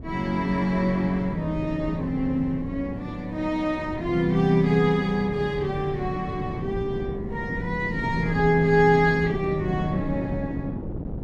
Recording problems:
wind on the microphone; below 280 Hz, SNR 9 dB

